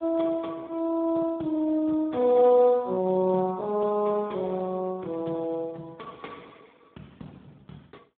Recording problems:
telephone audio; 150 Hz to 2.1 kHz, Speex

